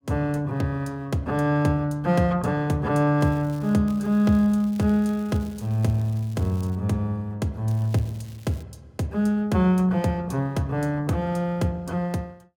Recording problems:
crackle; at 3 s, from 4 to 7 s and at 7.5 s; loose cable, SNR 27 dB

